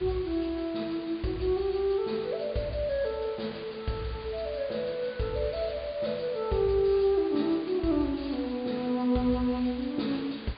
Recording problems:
treble cut off; nothing above 4.8 kHz
hiss; SNR 18 dB

